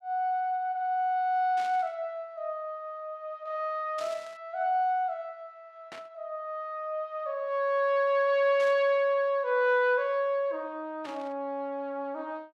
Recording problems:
burst of static; 5 times, first at 1.5 s; peak -11 dB vs average level

